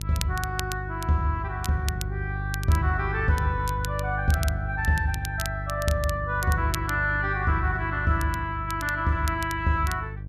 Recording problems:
hum; 50 Hz, harmonics up to 450 Hz, SNR 6 dB
crackle; vinyl, SNR 13 dB

